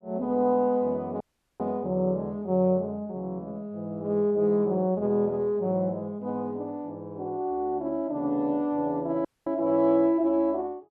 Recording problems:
audio cutting out; at 1 s and at 9.5 s

